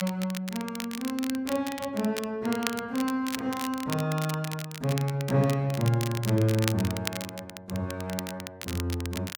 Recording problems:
crackling; vinyl, SNR 9 dB

